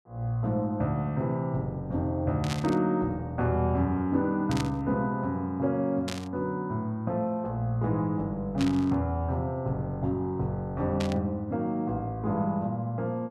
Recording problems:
burst of static; 5 times, first at 2.5 s; peak -2 dB vs average level

